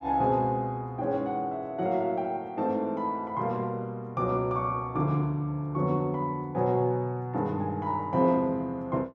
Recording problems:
none

